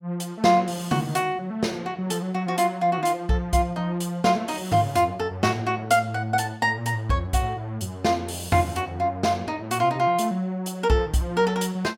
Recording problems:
none

